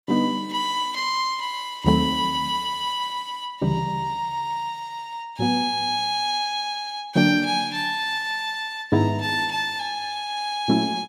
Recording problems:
none

